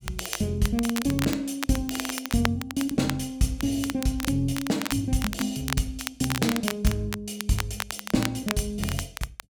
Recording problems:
crackle; vinyl, SNR 7 dB

